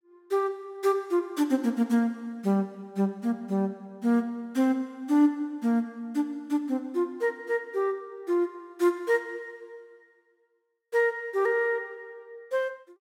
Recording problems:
none

